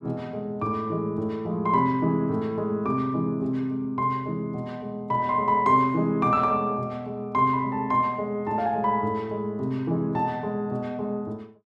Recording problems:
none

